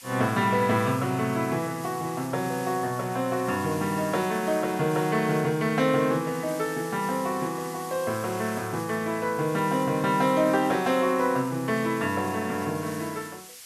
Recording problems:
background hiss; slope +3 dB per octave, SNR 16 dB

